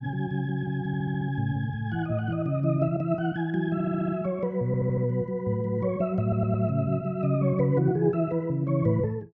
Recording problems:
audio stuttering; 4 times, first at 1 s

